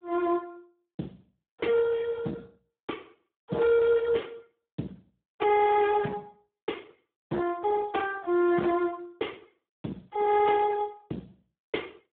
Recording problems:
phone line; 150 Hz to 2.1 kHz, Speex
distorted audio; hard clipping, signal-to-distortion ratio 10 dB

